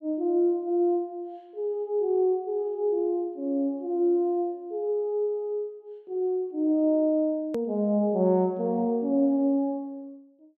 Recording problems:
edit click; at 7.5 s

